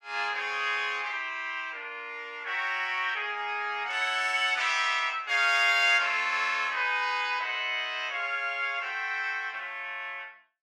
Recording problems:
none

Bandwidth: 15 kHz